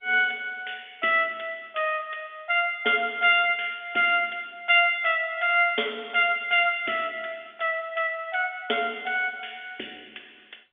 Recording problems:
telephone audio; 320 Hz to 3.5 kHz, G.711

